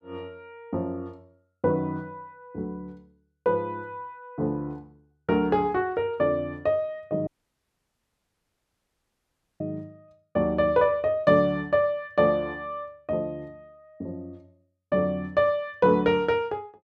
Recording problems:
audio cutting out; at 7.5 s for 2.5 s

